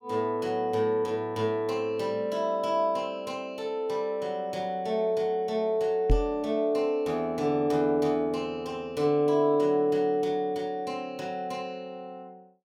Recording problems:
microphone bump; at 6 s; peak +6 dB vs average level

